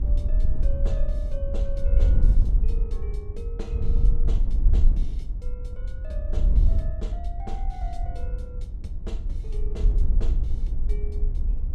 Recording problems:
hum; 60 Hz, harmonics up to 600 Hz, SNR 17 dB
wind on the microphone; below 56 Hz, SNR -14 dB

